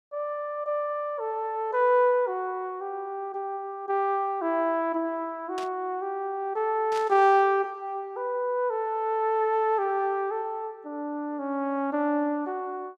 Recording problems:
burst of static; at 5.5 s and at 7 s; peak -8 dB vs average level

